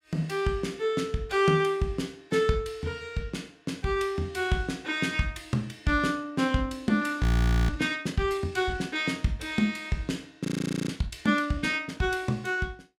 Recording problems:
audio freezing; at 7 s and at 10 s

